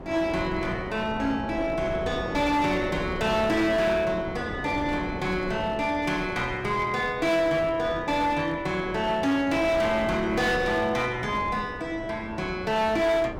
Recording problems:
distorted audio; hard clipping, signal-to-distortion ratio 11 dB
wind on the microphone; below 620 Hz, SNR 11 dB

